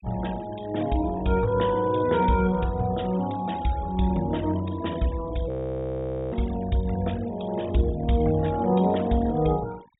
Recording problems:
low-pass filter; nothing above 4 kHz
denoising artefacts; signal-to-artefact ratio 21 dB
audio freezing; at 5.5 s for 1 s

